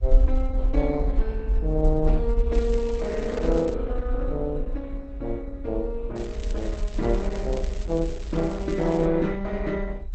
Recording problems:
lossy compression; Opus, log-spectral distance 2 dB
rumble; below 52 Hz, SNR 2 dB
crackling; from 2.5 to 3.5 s and from 6 to 9 s; loose cable, SNR 19 dB

